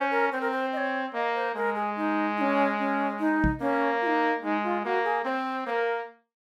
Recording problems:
knock on the microphone; at 3.5 s; peak +3 dB vs average level

